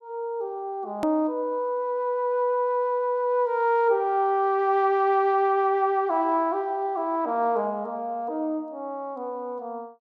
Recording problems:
edit click; at 1 s

